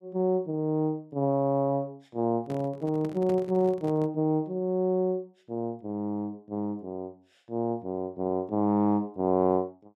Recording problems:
handling noise; from 2.5 to 4 s; peak -8 dB vs average level

